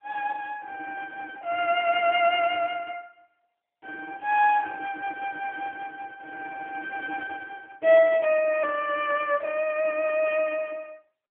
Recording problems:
telephone audio; 340 Hz to 3.3 kHz, AMR-NB

